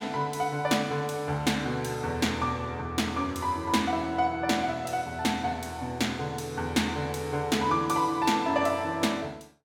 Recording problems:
none

